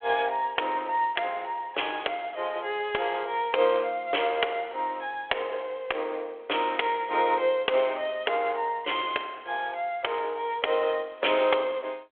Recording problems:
telephone audio; 340 Hz to 3.4 kHz, G.726

